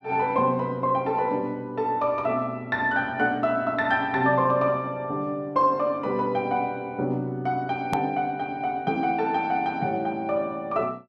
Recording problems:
click at an edit; at 8 s

